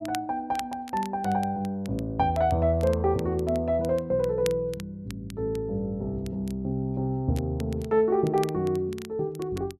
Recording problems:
crackling; vinyl, SNR 20 dB

